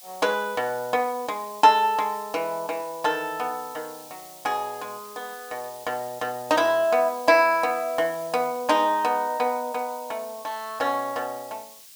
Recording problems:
background hiss; SNR 19 dB

